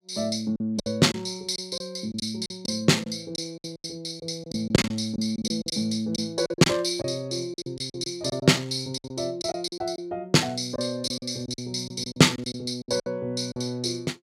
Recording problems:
packet loss; 12% of the sound replaced, filled with silence

